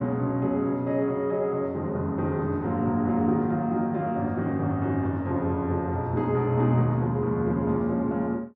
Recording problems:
none

